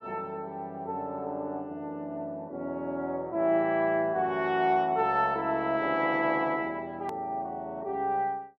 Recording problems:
click at an edit; at 7 s

